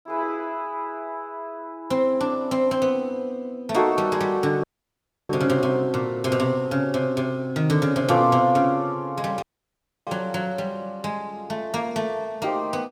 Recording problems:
dropout; at 4.5 s for 0.5 s and at 9.5 s for 0.5 s

